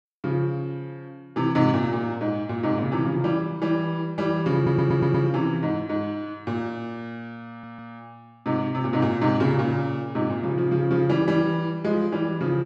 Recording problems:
audio stuttering; at 4.5 s and at 7.5 s

